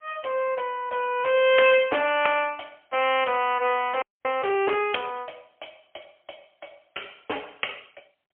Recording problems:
phone line; 320 Hz to 3.3 kHz, AMR-NB, then MP3
frozen audio; at 4 s

